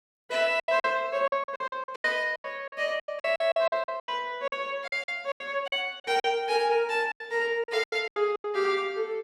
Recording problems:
packet loss; 17% of the sound replaced, filled with silence

